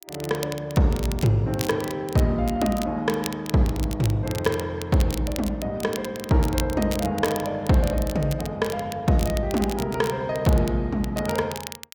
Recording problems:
crackle; vinyl, SNR 14 dB

